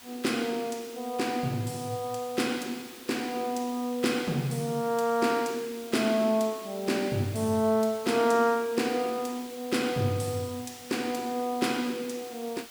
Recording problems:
hiss; slope 0 dB per octave, SNR 17 dB

